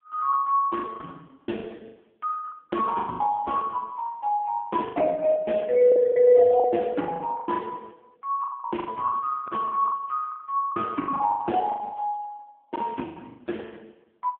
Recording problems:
phone line; 170 Hz to 3.4 kHz, AMR-NB
packet loss; 14% of the sound replaced, filled with the last packet

